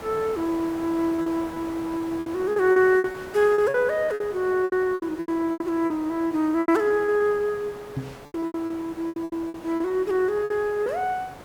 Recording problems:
background hiss; SNR 17 dB
packet loss; 14% of the sound replaced, filled with repeated pitch periods
microphone bump; at 8 s; peak -2 dB vs average level

